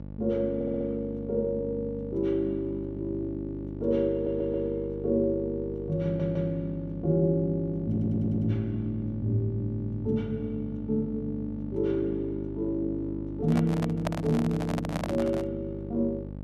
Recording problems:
electrical hum; 50 Hz, harmonics up to 850 Hz, SNR 10 dB
stutter; 4 times, first at 0.5 s
microphone handling noise; from 13 to 15 s; peak +2 dB vs average level

